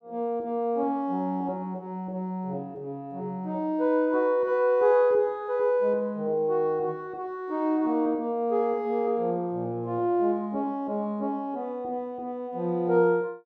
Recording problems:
none

